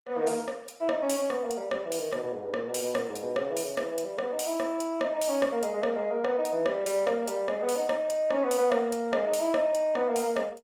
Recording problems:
codec artefacts; Opus, log-spectral distance 3 dB, nothing above 19 kHz

